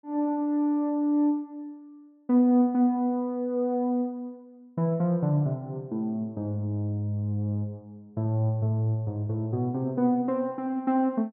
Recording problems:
none

